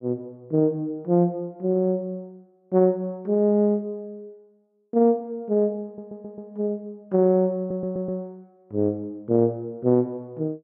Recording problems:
stutter; at 6 s and at 7.5 s

